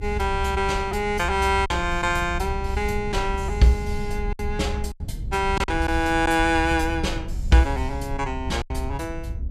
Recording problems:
rumble; below 78 Hz, SNR 7 dB
lost packets; 4% of the sound replaced, filled with silence

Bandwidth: 15 kHz